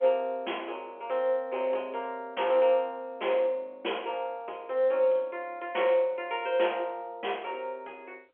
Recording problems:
phone line; 280 Hz to 3.3 kHz, G.711

